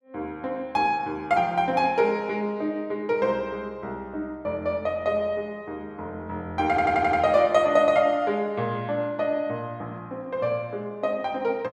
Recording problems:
audio stuttering; at 6.5 s

